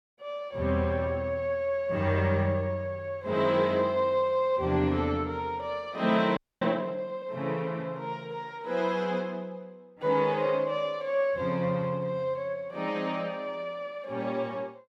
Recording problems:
audio freezing; at 6.5 s

